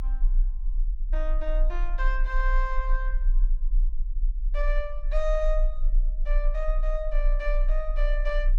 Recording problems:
low-frequency rumble; below 32 Hz, strongest tone 30 Hz, SNR -5 dB

